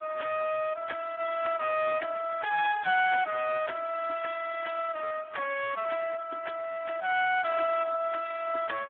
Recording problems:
telephone audio; 220 Hz to 3.3 kHz, Speex

